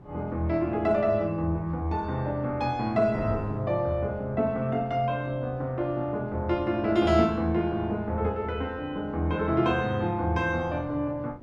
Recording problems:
wind on the microphone; below 360 Hz, SNR 19 dB

